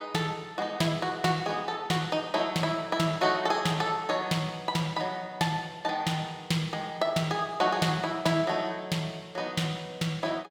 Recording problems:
none

